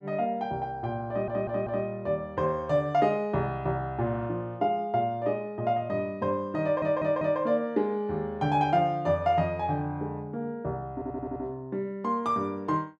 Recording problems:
stutter; at 1 s, at 6.5 s and at 11 s

